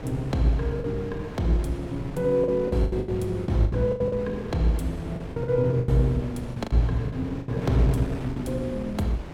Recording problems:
wind on the microphone; below 470 Hz, SNR 12 dB
lost packets; 11% of the sound replaced, filled with the last packet

